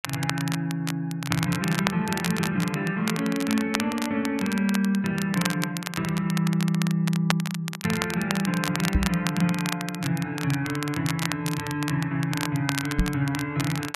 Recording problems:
crackling; vinyl, SNR 7 dB
microphone thump; at 9 s and at 13 s; peak +7 dB vs average level

